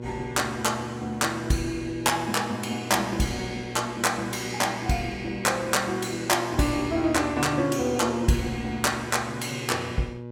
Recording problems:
hum; 60 Hz, harmonics up to 1.1 kHz, SNR 11 dB

